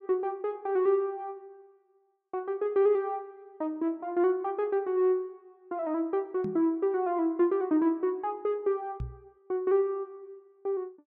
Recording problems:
microphone thump; at 6.5 s and at 9 s; peak -3 dB vs average level

